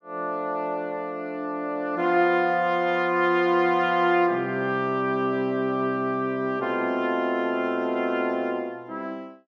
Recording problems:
none

